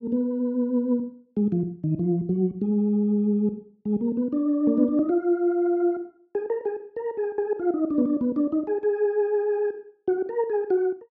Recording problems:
none

